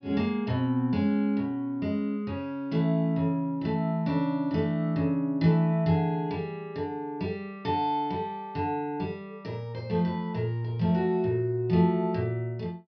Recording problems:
treble missing; nothing above 5.5 kHz

